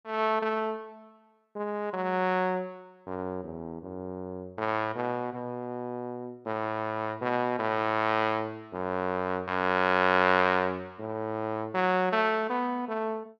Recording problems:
none

